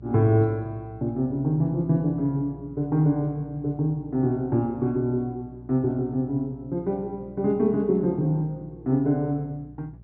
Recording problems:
hum; 60 Hz, harmonics up to 420 Hz, SNR 21 dB

